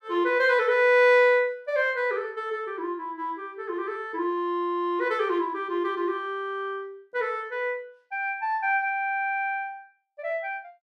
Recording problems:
none

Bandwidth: 14.5 kHz